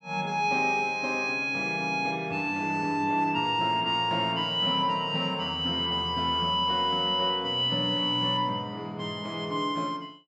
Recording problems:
none

